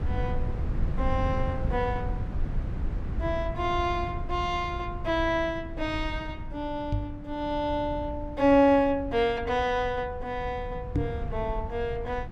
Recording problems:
rumble; below 120 Hz, SNR 7 dB
knock on the microphone; at 7 s and at 11 s; peak +5 dB vs average level

